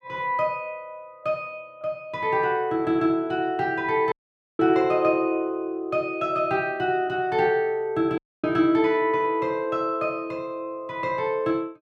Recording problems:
dropout; at 4 s and at 8 s

